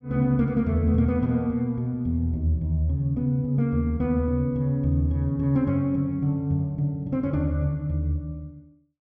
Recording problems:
none

